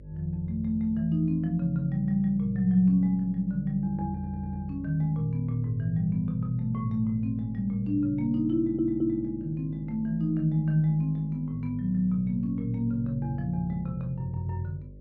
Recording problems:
hum; 50 Hz, harmonics up to 600 Hz, SNR 19 dB
audio stuttering; at 4 s and at 8.5 s

